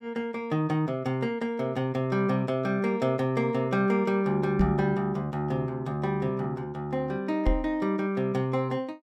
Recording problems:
microphone thump; at 4.5 s and at 7.5 s; peak +6 dB vs average level

